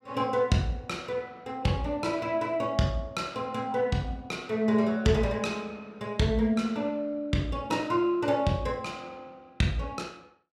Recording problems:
none

